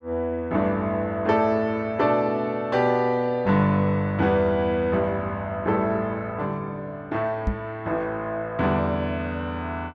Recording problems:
microphone thump; at 7.5 s; peak +3 dB vs average level

